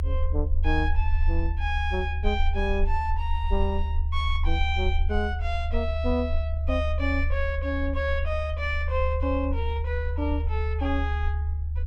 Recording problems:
low-frequency rumble; below 76 Hz, SNR -2 dB

